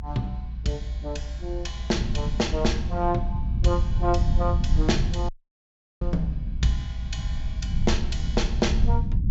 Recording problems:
treble missing; nothing above 7.5 kHz
low-frequency rumble; below 92 Hz, SNR -1 dB
audio cutting out; at 5.5 s for 0.5 s

